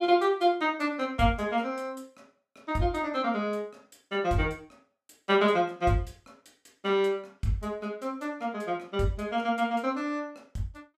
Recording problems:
none

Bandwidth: 14.5 kHz